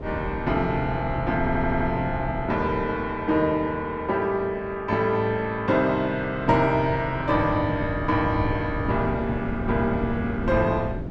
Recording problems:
wind noise; below 270 Hz, SNR 8 dB
audio stuttering; at 1.5 s

